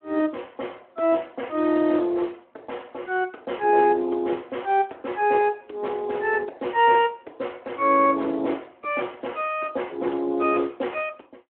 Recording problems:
phone line; 240 Hz to 3.3 kHz, Speex

